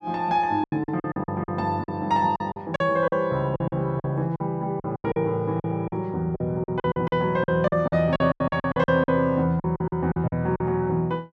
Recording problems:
lost packets; 16% of the sound replaced, filled with silence

